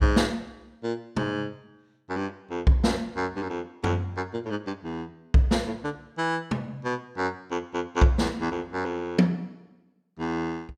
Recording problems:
none

